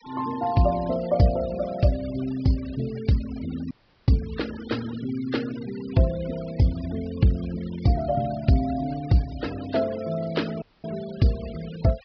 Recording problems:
low-pass filter; nothing above 5.5 kHz
denoising artefacts; signal-to-artefact ratio 19 dB
audio cutting out; at 3.5 s and at 11 s

